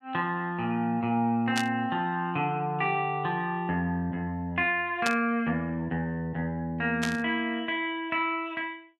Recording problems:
static burst; at 1.5 s, at 5 s and at 7 s; peak +2 dB vs average level

